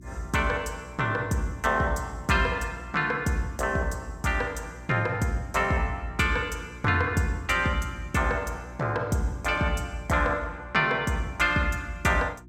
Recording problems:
hum; 60 Hz, harmonics up to 360 Hz, SNR 21 dB

